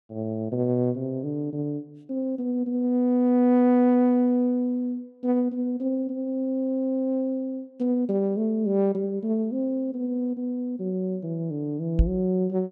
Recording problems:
microphone bump; at 12 s; peak +7 dB vs average level

